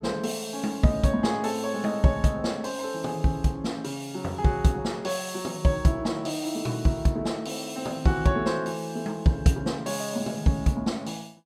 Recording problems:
none

